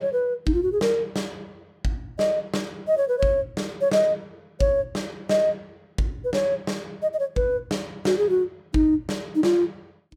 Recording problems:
none

